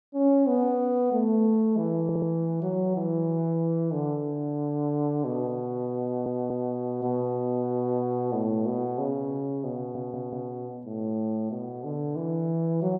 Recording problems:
audio stuttering; at 2 s, at 6 s and at 10 s

